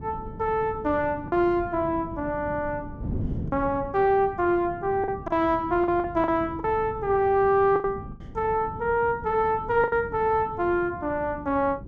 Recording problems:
wind noise; below 230 Hz, SNR 14 dB
packet loss; 4% of the sound replaced, filled with the last packet

